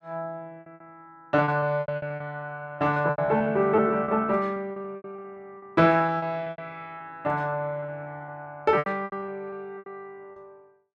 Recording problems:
packet loss; 16% of the sound replaced, filled with repeated pitch periods

